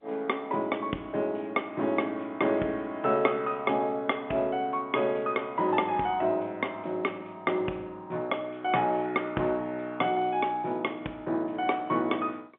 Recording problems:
phone line; 220 Hz to 3.4 kHz, G.711

